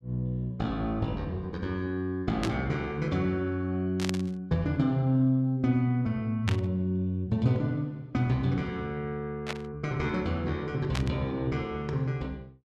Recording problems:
static burst; 5 times, first at 2.5 s; peak +1 dB vs average level

